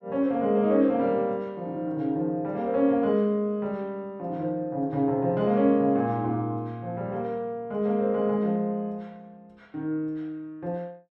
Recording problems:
none

